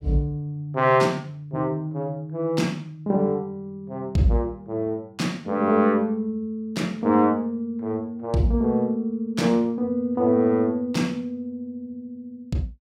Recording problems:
none

